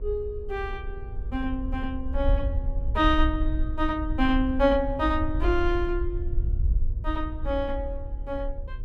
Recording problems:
electrical hum; 60 Hz, harmonics up to 1.1 kHz, SNR 25 dB
wind on the microphone; below 62 Hz, SNR 3 dB

